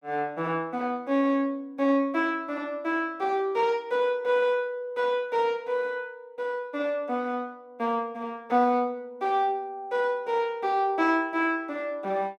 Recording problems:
none

